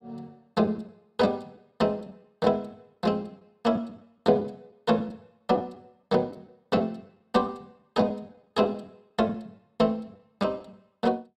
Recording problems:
lost packets; 6% of the sound replaced, filled with the last packet

